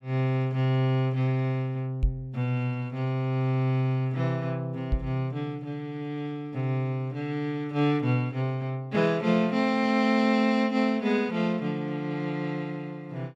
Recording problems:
microphone thump; at 2 s and at 5 s; peak +5 dB vs average level

